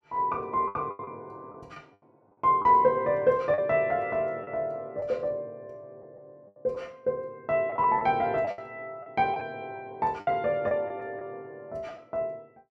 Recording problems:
lost packets; 7% of the sound replaced, filled with the last packet

